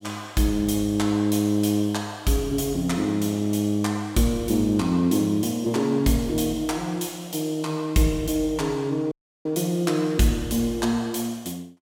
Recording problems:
audio cutting out; at 9 s

